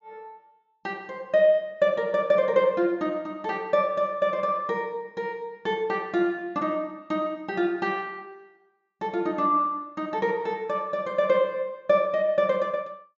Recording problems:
low-pass filter; nothing above 7.4 kHz

